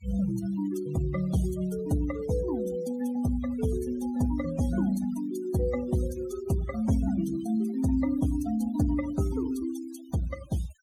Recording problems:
denoising artefacts; signal-to-artefact ratio 16 dB

